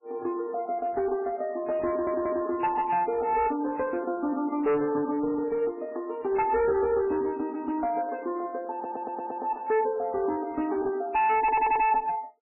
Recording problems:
codec artefacts; MP3, log-spectral distance 2 dB, nothing above 2.4 kHz
distortion; hard clipping, uneven, signal-to-distortion ratio 9 dB
audio stuttering; at 2 s, at 8.5 s and at 11 s

